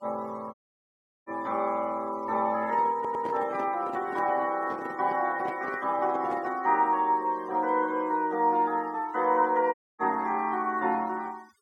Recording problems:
noise reduction artefacts; signal-to-artefact ratio 27 dB
audio cutting out; at 0.5 s for 0.5 s and at 9.5 s
handling noise; from 2.5 to 6.5 s; peak -7 dB vs average level
stutter; at 3 s

